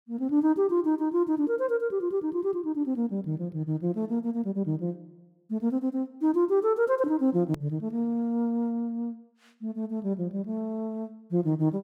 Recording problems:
hard cut with a click; at 7.5 s

